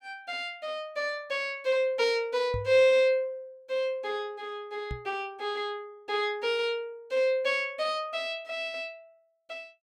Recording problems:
microphone thump; at 2.5 s and at 5 s; peak -3 dB vs average level

